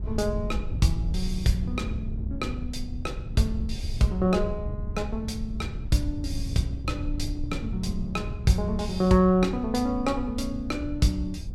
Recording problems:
wind on the microphone; below 100 Hz, SNR 6 dB

